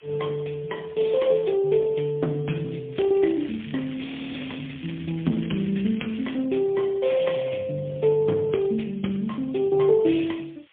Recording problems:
phone line; 150 Hz to 3.5 kHz, AMR-NB, then MP3
hiss; SNR 30 dB
crackling; from 3 to 6.5 s; loose cable, SNR 18 dB
frozen audio; at 4 s

